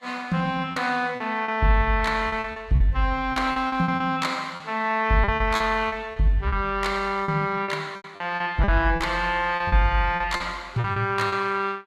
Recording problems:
lossy compression; Vorbis, log-spectral distance 2 dB, nothing above 13.8 kHz
packet loss; 12% of the sound replaced, filled with repeated pitch periods

